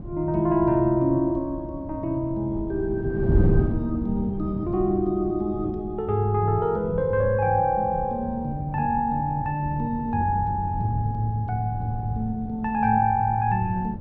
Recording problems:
wind noise; below 180 Hz, SNR 8 dB

